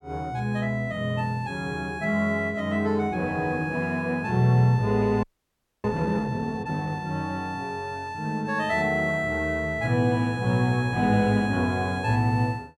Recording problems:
frozen audio; at 5 s for 0.5 s

